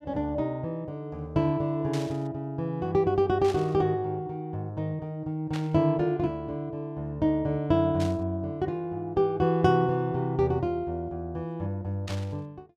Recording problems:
burst of static; 5 times, first at 2 s; peak -7 dB vs average level

